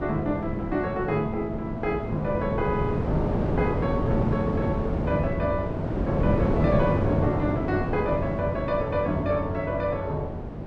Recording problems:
wind on the microphone; below 400 Hz, SNR 0 dB

